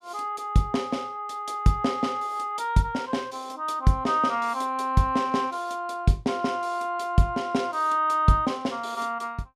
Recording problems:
none

